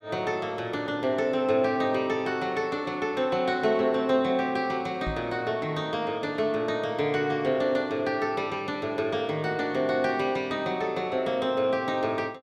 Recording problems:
microphone bump; at 5 s; peak -3 dB vs average level

